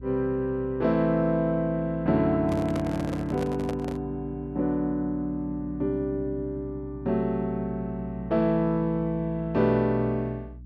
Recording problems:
hum; 60 Hz, harmonics up to 300 Hz, SNR 16 dB
microphone handling noise; from 2.5 to 4 s; peak -4 dB vs average level

